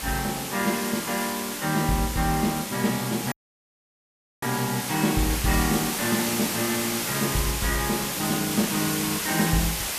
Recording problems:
hiss; slope 0 dB per octave, SNR 2 dB
audio cutting out; at 3.5 s for 1 s

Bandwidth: 14.5 kHz